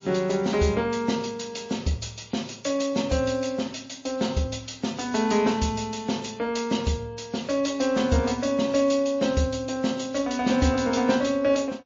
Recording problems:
lossy codec; MP3, log-spectral distance 5 dB, nothing above 6.9 kHz

